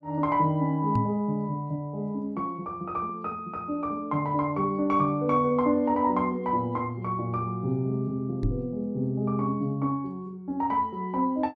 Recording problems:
knock on the microphone; at 1 s and at 8.5 s; peak +4 dB vs average level

